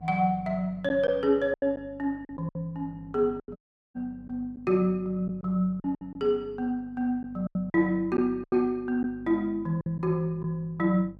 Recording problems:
hum; 50 Hz, harmonics up to 800 Hz, SNR 22 dB
packet loss; 7% of the sound replaced, filled with silence
audio cutting out; at 3.5 s

